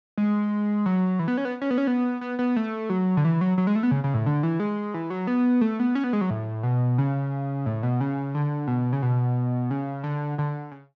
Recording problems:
treble missing; nothing above 8 kHz

